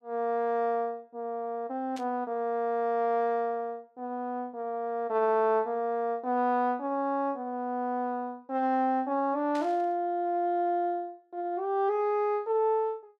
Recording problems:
burst of static; at 2 s and at 9.5 s; peak -11 dB vs average level

